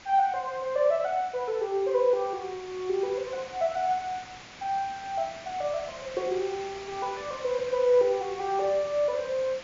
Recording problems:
treble missing; nothing above 7.3 kHz
background hiss; SNR 16 dB

